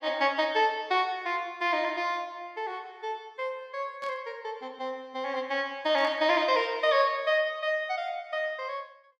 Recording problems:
static burst; at 4 s and at 6 s; peak -15 dB vs average level

